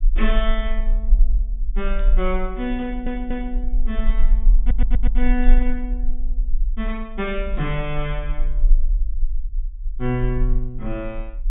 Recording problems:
low-pass filter; nothing above 3.7 kHz
low-frequency rumble; below 38 Hz, strongest tone 22 Hz, SNR -3 dB
burst of static; at 2 s, at 5.5 s and at 7.5 s; peak -14 dB vs average level
stutter; at 3 s and at 4.5 s

